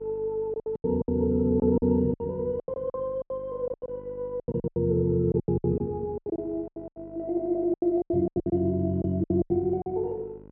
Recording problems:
hum; 50 Hz, harmonics up to 1.1 kHz, SNR 21 dB
lost packets; 18% of the sound replaced, filled with silence

